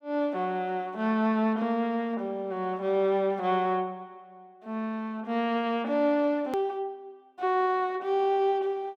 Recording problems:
hard cut with a click; at 6.5 s

